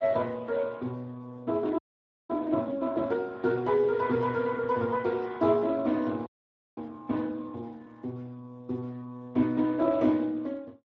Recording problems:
codec artefacts; Speex, log-spectral distance 2 dB
audio freezing; at 2 s for 0.5 s and at 6.5 s for 0.5 s

